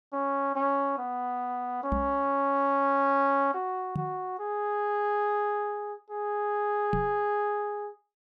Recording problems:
microphone thump; at 2 s, at 4 s and at 7 s; peak +1 dB vs average level

